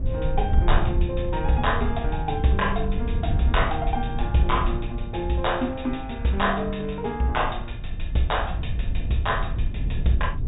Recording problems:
treble missing; nothing above 4 kHz
low-frequency rumble; below 82 Hz, SNR 3 dB

